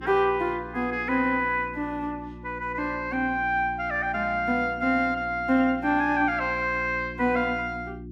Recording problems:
hum; 60 Hz, harmonics up to 360 Hz, SNR 15 dB

